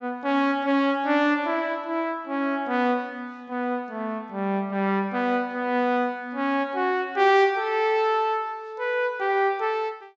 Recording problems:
treble missing; nothing above 7.8 kHz

